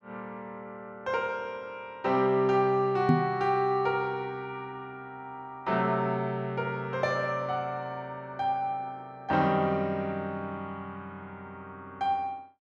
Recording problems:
knock on the microphone; at 3 s; peak +9 dB vs average level

